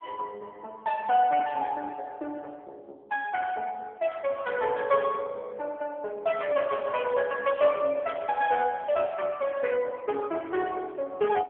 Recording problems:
phone line; 320 Hz to 3.3 kHz, AMR-NB

